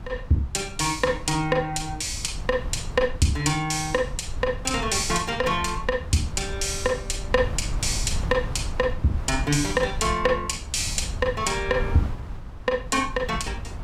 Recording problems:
wind noise; below 110 Hz, SNR 9 dB

